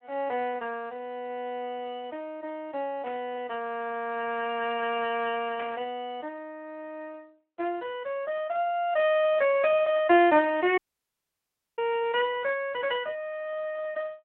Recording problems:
phone line; 260 Hz to 3.2 kHz, Speex
burst of static; at 3 s and at 5.5 s; peak -7 dB vs average level
audio cutting out; at 11 s for 1 s

